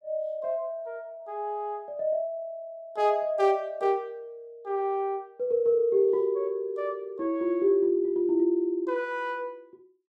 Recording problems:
none

